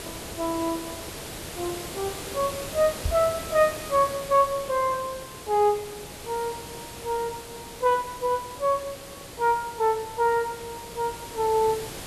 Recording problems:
background hiss; slope -3 dB per octave, SNR 11 dB
knock on the microphone; at 3 s; peak +2 dB vs average level

